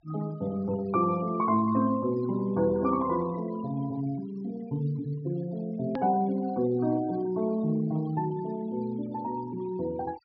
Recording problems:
treble cut off; nothing above 5.5 kHz
noise reduction artefacts; signal-to-artefact ratio 22 dB
edit click; at 6 s

